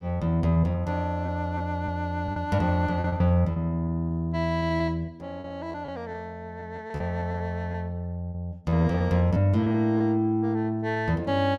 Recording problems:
lost packets; 9% of the sound replaced, filled with repeated pitch periods

